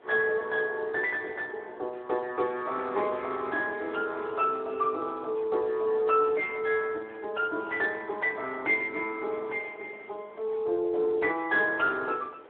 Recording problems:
phone line; 300 Hz to 2.8 kHz, Speex
wind on the microphone; below 990 Hz, SNR 22 dB

